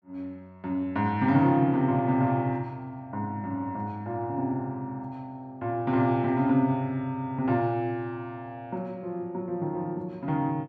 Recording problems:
none

